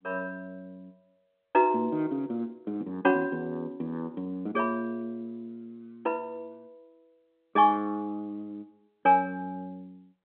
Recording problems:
telephone audio; 190 Hz to 3.6 kHz, G.711

